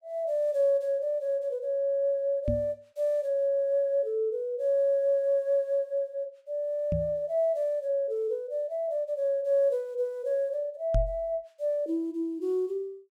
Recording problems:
microphone thump; at 2.5 s, at 7 s and at 11 s; peak +4 dB vs average level

